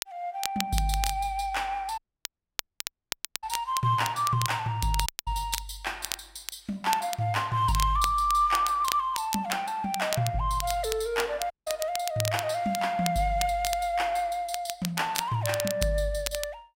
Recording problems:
crackling; vinyl, SNR 8 dB
audio cutting out; at 2 s for 1.5 s, at 5 s and at 12 s

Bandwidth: 16 kHz